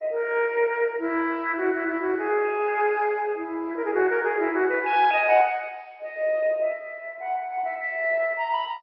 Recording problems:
codec artefacts; MP2, log-spectral distance 3 dB, nothing above 5 kHz

